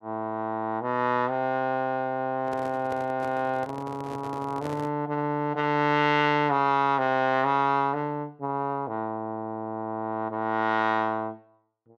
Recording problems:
handling noise; from 2.5 to 5 s; peak -7 dB vs average level

